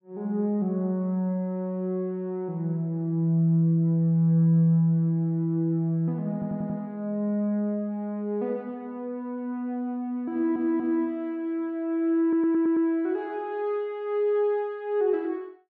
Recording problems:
audio stuttering; at 6.5 s, at 10 s and at 12 s

